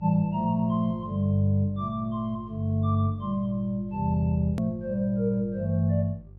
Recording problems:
mains hum; 50 Hz, harmonics up to 500 Hz, SNR 20 dB
edit click; at 4.5 s

